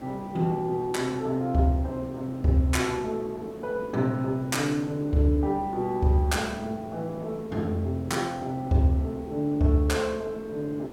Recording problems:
hiss; SNR 15 dB

